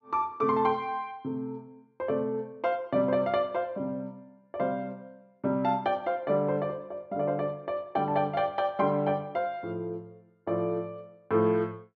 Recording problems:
none

